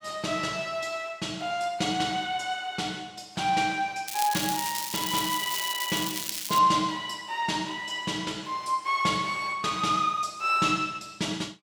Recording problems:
crackling; from 4 to 6.5 s; loose cable, SNR 4 dB

